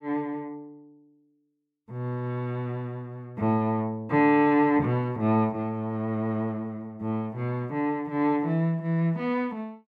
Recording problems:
none

